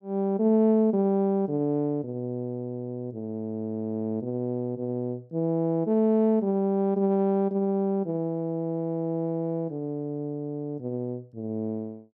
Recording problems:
none

